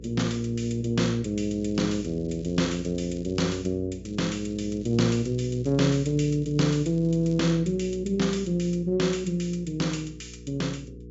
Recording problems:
treble missing; nothing above 8 kHz
electrical hum; 60 Hz, harmonics up to 480 Hz, SNR 15 dB
crackle; from 1.5 to 3.5 s and from 4 to 7.5 s; loose cable, SNR 29 dB

